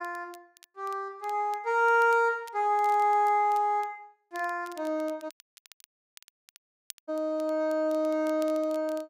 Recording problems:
crackle; vinyl, SNR 26 dB
audio cutting out; at 5.5 s for 2 s

